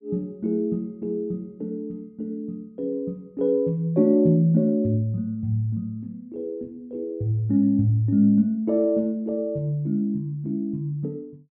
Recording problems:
none

